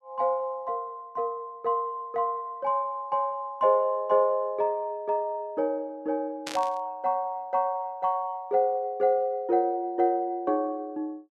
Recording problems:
static burst; at 6.5 s; peak -3 dB vs average level

